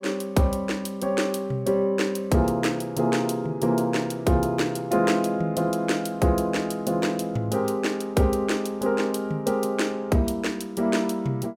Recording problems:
none

